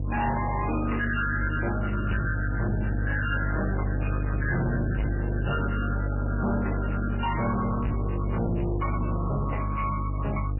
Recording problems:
codec artefacts; MP3, log-spectral distance 6 dB, nothing above 2.8 kHz
distorted audio; soft clipping, signal-to-distortion ratio 7 dB
mains hum; 50 Hz, harmonics up to 1.4 kHz, SNR 1 dB

